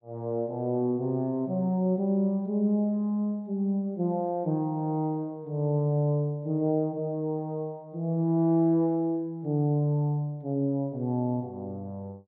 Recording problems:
none

